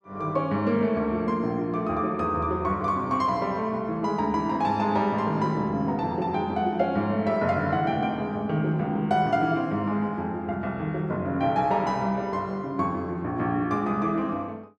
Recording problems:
none

